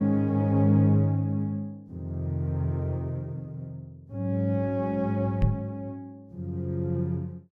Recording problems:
knock on the microphone; at 5.5 s; peak +7 dB vs average level

